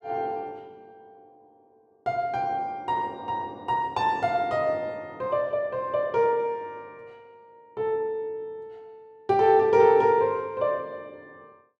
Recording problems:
none

